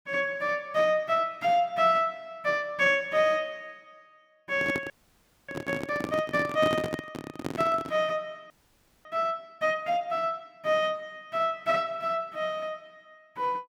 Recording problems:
handling noise; from 4.5 to 8 s; peak 0 dB vs average level
audio freezing; at 5 s for 0.5 s and at 8.5 s for 0.5 s

